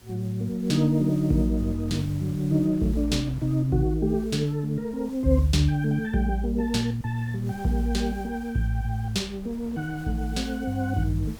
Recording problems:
background hiss; slope -1 dB per octave, SNR 26 dB
wind noise; below 230 Hz, SNR 23 dB

